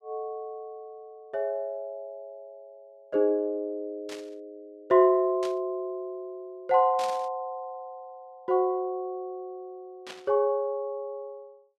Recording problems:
burst of static; 4 times, first at 4 s; peak -7 dB vs average level

